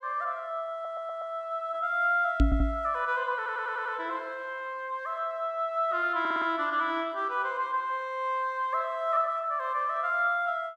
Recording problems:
audio stuttering; 4 times, first at 0.5 s
microphone bump; at 2.5 s; peak +9 dB vs average level

